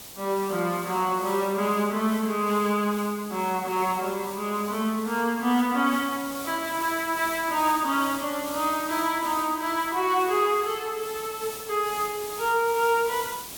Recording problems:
hiss; SNR 12 dB
burst of static; at 2.5 s; peak -15 dB vs average level

